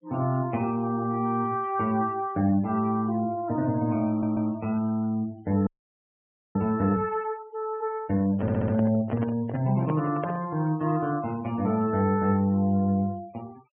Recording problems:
treble missing; nothing above 3.2 kHz
denoising artefacts; signal-to-artefact ratio 26 dB
audio stuttering; at 4 s and at 8.5 s
frozen audio; at 5.5 s for 1 s
microphone handling noise; from 8.5 to 11 s; peak -3 dB vs average level

